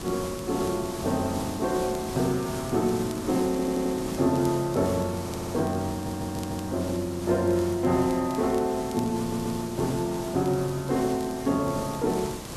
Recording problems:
background hiss; SNR 10 dB
crackle; vinyl, SNR 25 dB
audio stuttering; 4 times, first at 3.5 s

